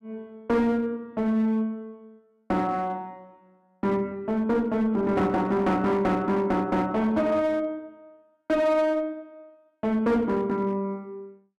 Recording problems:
distortion; hard clipping, uneven, signal-to-distortion ratio 10 dB

